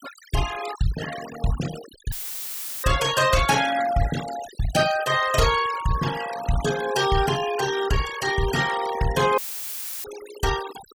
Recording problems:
noise reduction artefacts; signal-to-artefact ratio 11 dB
audio cutting out; at 2 s for 0.5 s and at 9.5 s for 0.5 s; filled with static

